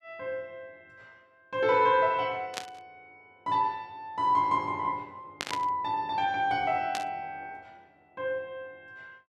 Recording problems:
static burst; at 2.5 s, at 5.5 s and at 7 s; peak +1 dB vs average level

